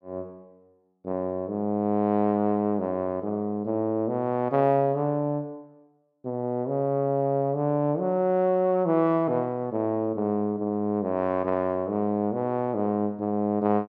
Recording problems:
none

